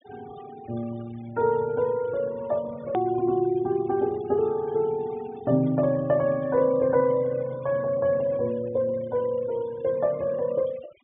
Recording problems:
low-pass filter; nothing above 3.6 kHz
noise reduction artefacts; signal-to-artefact ratio 23 dB
edit click; at 3 s

